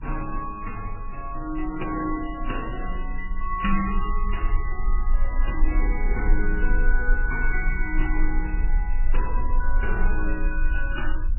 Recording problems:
lossy compression; MP3, then MP3, log-spectral distance 2 dB, nothing above 2.9 kHz
rumble; below 36 Hz, strongest tone 20 Hz, SNR -2 dB

